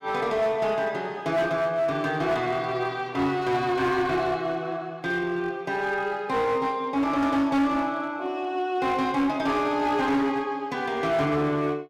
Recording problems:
distorted audio; hard clipping, uneven, signal-to-distortion ratio 10 dB

